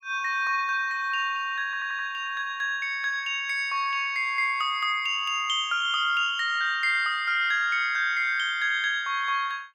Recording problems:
stutter; at 1.5 s

